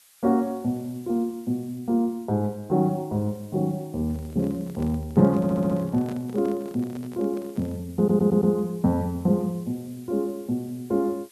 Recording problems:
hiss; slope +3 dB per octave, SNR 27 dB
microphone handling noise; from 4 to 8 s; peak -10 dB vs average level
audio stuttering; at 5.5 s and at 8 s

